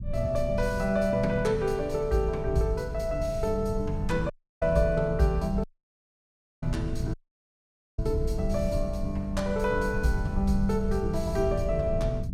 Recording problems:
low-frequency rumble; below 110 Hz, SNR 7 dB
dropout; at 4.5 s, at 5.5 s for 1 s and at 7 s for 1 s

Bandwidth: 16 kHz